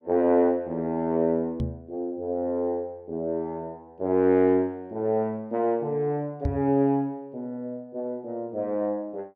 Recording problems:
microphone thump; at 1.5 s and at 6.5 s; peak +3 dB vs average level

